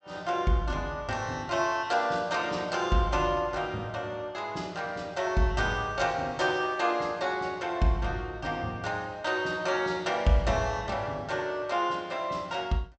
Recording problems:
treble cut off; nothing above 8 kHz

